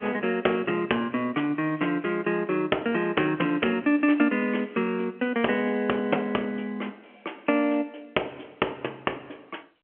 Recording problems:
telephone audio; 240 Hz to 3.2 kHz, G.711

